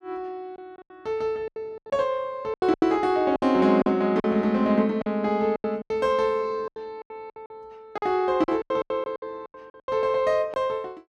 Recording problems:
packet loss; 14% of the sound replaced, filled with silence

